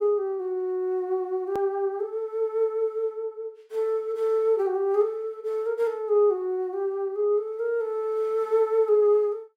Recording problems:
edit click; at 1.5 s

